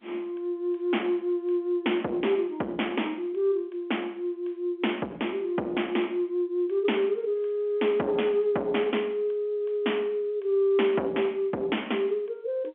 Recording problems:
telephone audio; 220 Hz to 3.4 kHz, G.711
distortion; soft clipping, signal-to-distortion ratio 8 dB

